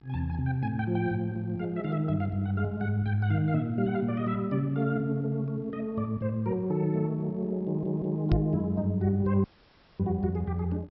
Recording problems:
low-pass filter; nothing above 5.5 kHz
hum; 50 Hz, harmonics up to 2.5 kHz, SNR 28 dB
stutter; at 7.5 s
microphone thump; at 8.5 s; peak +7 dB vs average level
audio cutting out; at 9.5 s for 0.5 s

